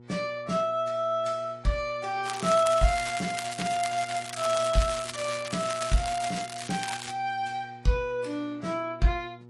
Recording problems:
codec artefacts; MP3, then AAC, log-spectral distance 5 dB
hum; 60 Hz, harmonics up to 960 Hz, SNR 21 dB
crackle; from 2 to 7 s; loose cable, SNR 8 dB

